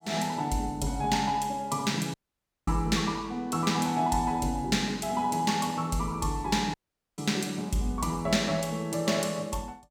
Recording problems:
audio cutting out; at 2 s for 0.5 s and at 6.5 s

